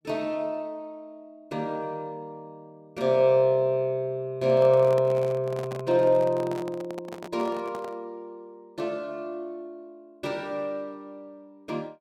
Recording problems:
microphone handling noise; from 4.5 to 8 s; peak -6 dB vs average level

